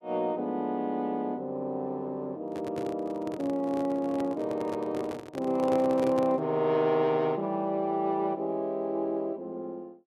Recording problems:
microphone handling noise; from 2.5 to 6.5 s; peak -2 dB vs average level

